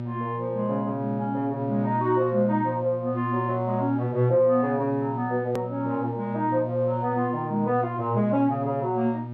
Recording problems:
electrical hum; 60 Hz, harmonics up to 960 Hz, SNR 8 dB
hard cut with a click; at 5.5 s

